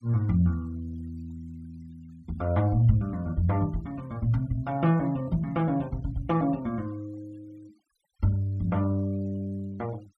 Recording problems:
denoising artefacts; signal-to-artefact ratio 28 dB

